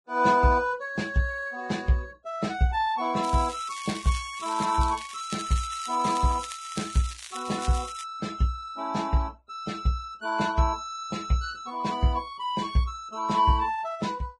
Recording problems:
lossy compression; Vorbis, log-spectral distance 4 dB, nothing above 10.1 kHz
crackling; from 3 to 8 s; loose cable, SNR 12 dB

